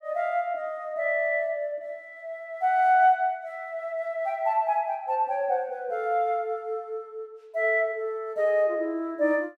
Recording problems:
none

